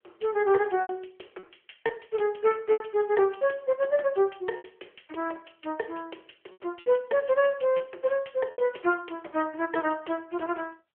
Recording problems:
telephone audio; 320 Hz to 3.3 kHz, AMR-NB
packet loss; 6% of the sound replaced, filled with repeated pitch periods

